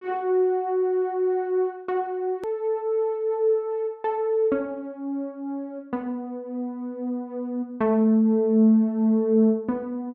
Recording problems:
edit click; at 2.5 s

